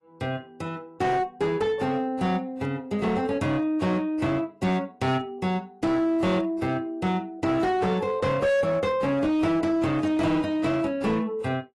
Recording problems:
lossy compression; AAC, log-spectral distance 2 dB
distortion; hard clipping, signal-to-distortion ratio 11 dB

